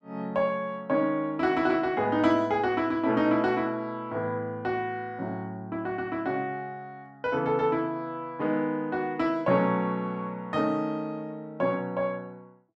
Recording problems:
none

